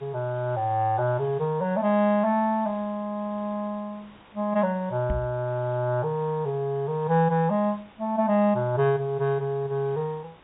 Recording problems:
treble missing; nothing above 4 kHz
hiss; SNR 27 dB
knock on the microphone; at 5 s; peak +1 dB vs average level

